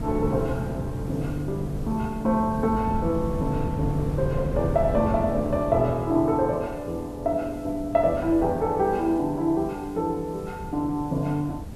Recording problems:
hiss; SNR 28 dB
wind on the microphone; below 230 Hz, SNR 8 dB

